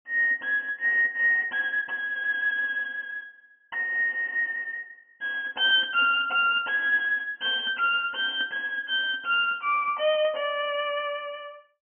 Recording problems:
low-pass filter; nothing above 3.2 kHz

